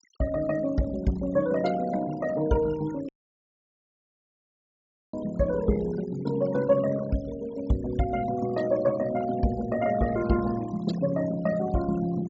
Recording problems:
low-pass filter; nothing above 8 kHz
denoising artefacts; signal-to-artefact ratio 17 dB
dropout; at 3 s for 2 s

